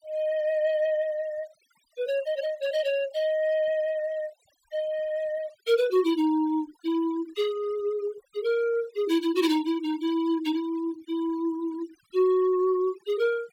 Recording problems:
denoising artefacts; signal-to-artefact ratio 20 dB

